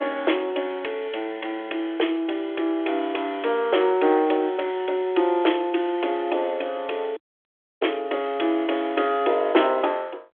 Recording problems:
phone line; 280 Hz to 3.4 kHz, G.726
audio cutting out; at 7 s for 0.5 s

